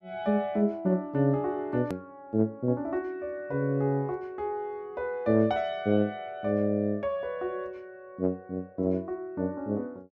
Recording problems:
hard cut with a click; at 2 s

